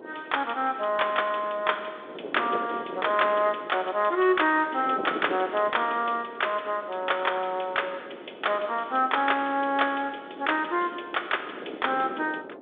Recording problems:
phone line; 320 Hz to 3.6 kHz, G.726
wind on the microphone; below 580 Hz, SNR 14 dB

